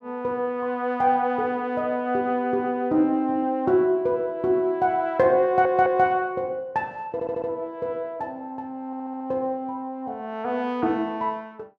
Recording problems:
audio stuttering; at 5.5 s, at 7 s and at 9 s

